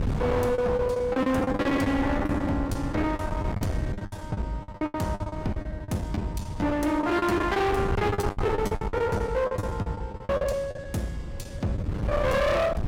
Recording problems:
distorted audio; hard clipping, uneven, signal-to-distortion ratio 6 dB
wind on the microphone; below 350 Hz, SNR 6 dB
packet loss; 19% of the sound replaced, filled with the last packet

